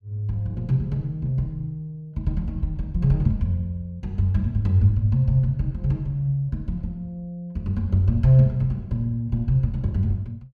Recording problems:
none

